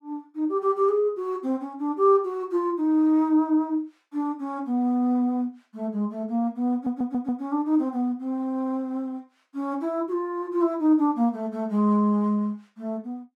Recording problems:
stutter; at 6.5 s

